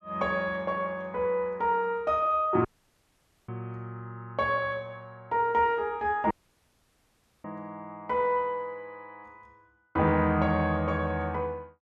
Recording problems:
dropout; at 2.5 s for 1 s and at 6.5 s for 1 s

